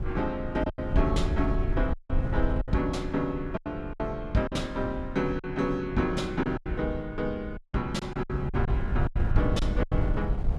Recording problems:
wind on the microphone; below 100 Hz, SNR 3 dB
packet loss; 8% of the sound replaced, filled with silence
audio cutting out; at 2 s and at 7.5 s

